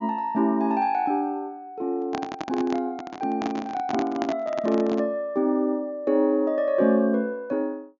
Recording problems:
treble missing; nothing above 7.1 kHz
microphone handling noise; from 2 to 5 s; peak -1 dB vs average level

